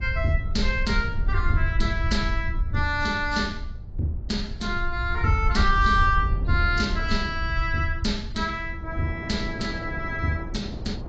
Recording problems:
codec artefacts; AAC, log-spectral distance 2 dB, nothing above 7.3 kHz
low-frequency rumble; below 74 Hz, SNR 4 dB
wind noise; below 370 Hz, SNR 15 dB

